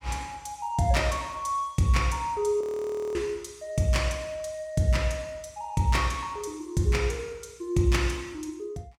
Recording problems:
frozen audio; at 2.5 s for 0.5 s

